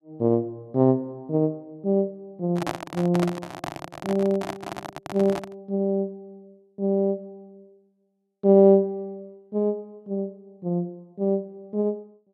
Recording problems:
microphone handling noise; from 2.5 to 5.5 s; peak 0 dB vs average level

